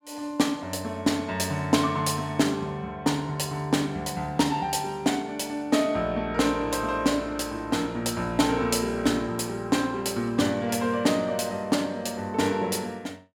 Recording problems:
none

